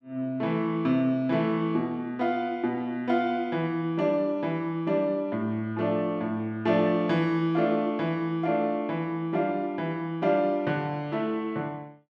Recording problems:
none

